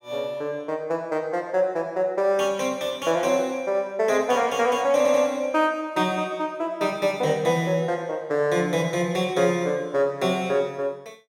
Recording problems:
stutter; at 5 s

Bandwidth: 16 kHz